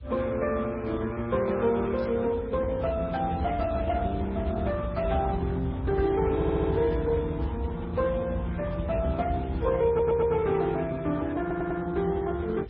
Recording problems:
lossy codec; Speex, then MP3, log-spectral distance 2 dB
rumble; below 100 Hz, SNR 9 dB
static burst; at 2 s; peak -15 dB vs average level
audio stuttering; at 6.5 s, at 10 s and at 11 s

